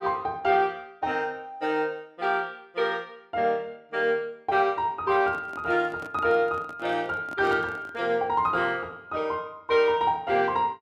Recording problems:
handling noise; from 5 to 8 s; peak -10 dB vs average level

